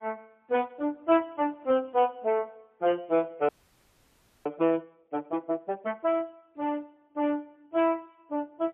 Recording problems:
phone line; 190 Hz to 3.4 kHz, AMR-NB, then MP3
frozen audio; at 3.5 s for 1 s

